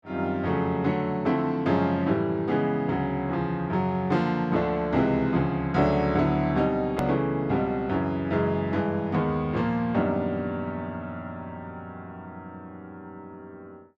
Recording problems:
edit click; at 7 s

